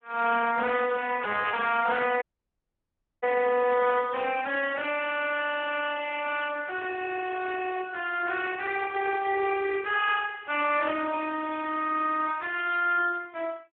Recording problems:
telephone audio; 260 Hz to 3.4 kHz, Speex
audio cutting out; at 2 s for 1 s

